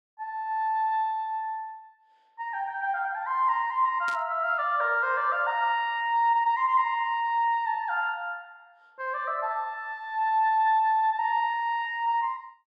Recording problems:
burst of static; at 4 s; peak -10 dB vs average level

